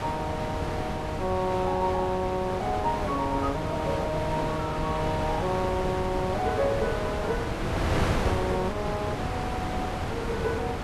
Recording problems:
wind noise; below 960 Hz, SNR 1 dB

